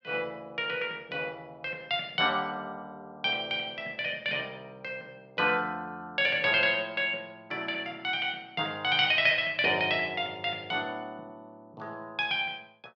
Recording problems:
none

